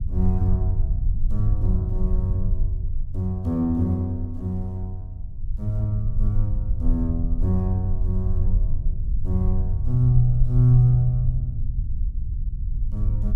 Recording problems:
low-frequency rumble; below 58 Hz, SNR 3 dB

